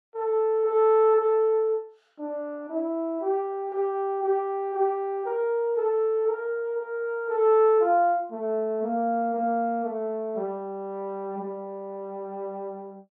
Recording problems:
none

